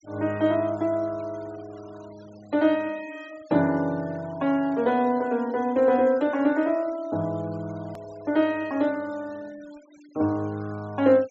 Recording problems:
treble cut off; nothing above 8 kHz
noise reduction artefacts; signal-to-artefact ratio 26 dB
hard cut with a click; at 8 s

